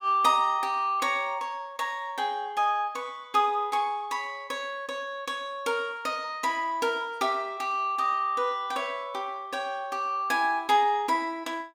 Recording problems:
none

